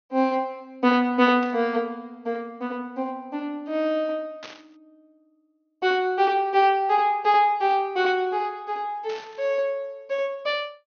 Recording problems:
low-pass filter; nothing above 6.5 kHz
static burst; at 1.5 s, at 4.5 s and at 9 s; peak -11 dB vs average level

